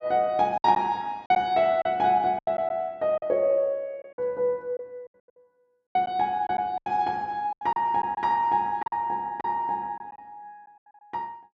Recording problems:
lost packets; 8% of the sound replaced, filled with silence

